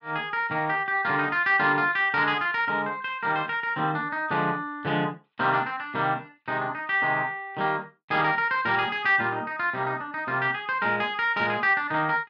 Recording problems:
none

